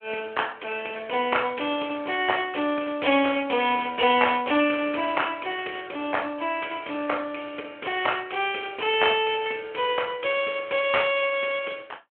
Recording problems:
phone line; 240 Hz to 3.3 kHz, Speex

